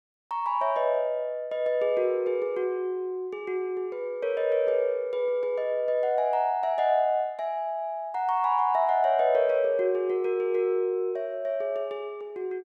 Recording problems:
none

